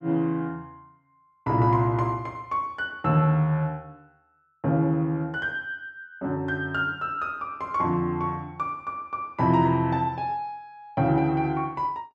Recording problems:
none

